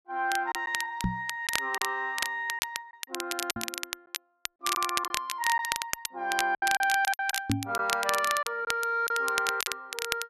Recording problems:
crackling; vinyl, SNR 4 dB
lost packets; 7% of the sound replaced, filled with silence
microphone bump; at 1 s, at 3.5 s and at 7.5 s; peak +6 dB vs average level

